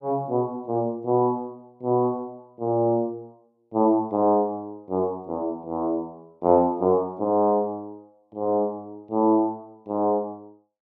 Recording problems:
none

